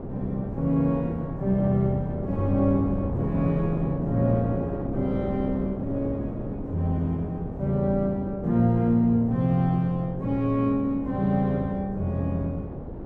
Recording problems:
wind on the microphone; below 380 Hz, SNR 9 dB

